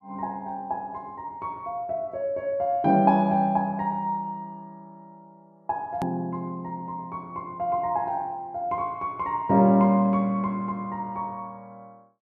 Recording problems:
hard cut with a click; at 6 s

